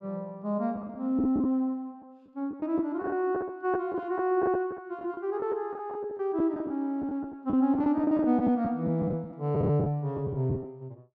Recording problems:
lost packets; 10% of the sound replaced, filled with the last packet

